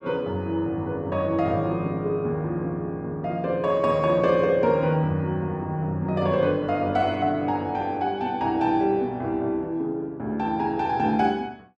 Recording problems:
none

